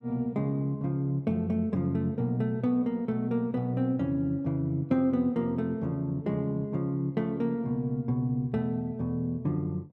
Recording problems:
none

